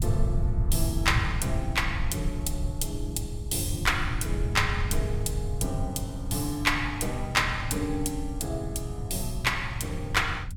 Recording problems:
low-frequency rumble; below 110 Hz, SNR 4 dB

